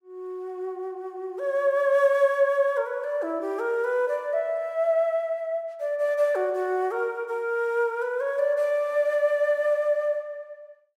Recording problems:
none

